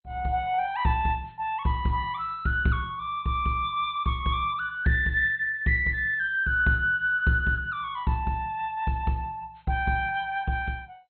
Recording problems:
lossy compression; MP2, log-spectral distance 2 dB, nothing above 3.6 kHz

